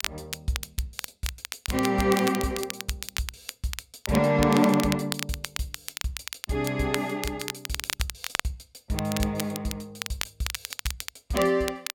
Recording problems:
crackling; vinyl, SNR 6 dB

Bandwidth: 16.5 kHz